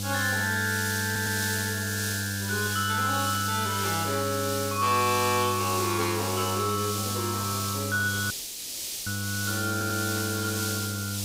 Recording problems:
hum; 50 Hz, harmonics up to 800 Hz, SNR 6 dB
hiss; SNR 3 dB
stutter; at 1 s, at 2 s and at 9.5 s
static burst; at 3.5 s and at 10 s; peak -11 dB vs average level
audio cutting out; at 8.5 s for 1 s

